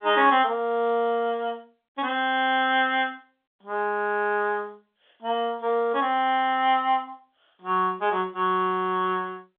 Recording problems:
phone line; 220 Hz to 3.6 kHz, G.711

